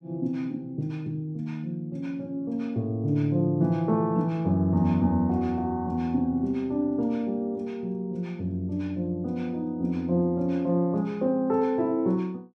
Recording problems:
none

